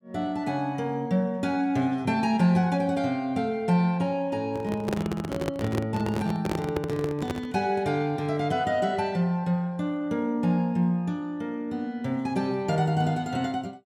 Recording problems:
handling noise; from 4.5 to 7.5 s; peak +1 dB vs average level

